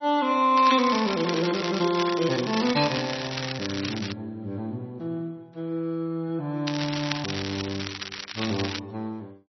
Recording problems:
lossy codec; MP3, log-spectral distance 10 dB, nothing above 5.3 kHz
crackle; from 0.5 to 4 s and from 6.5 to 9 s; loose cable, SNR 6 dB

